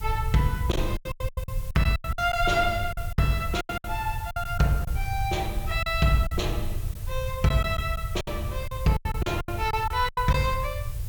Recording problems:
background hiss; slope -2 dB per octave, SNR 17 dB
rumble; below 98 Hz, SNR 7 dB
lost packets; 12% of the sound replaced, filled with silence

